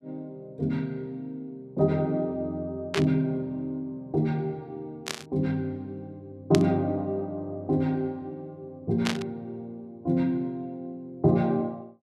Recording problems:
static burst; 4 times, first at 3 s; peak +3 dB vs average level

